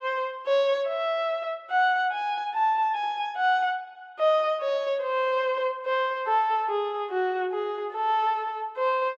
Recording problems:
none

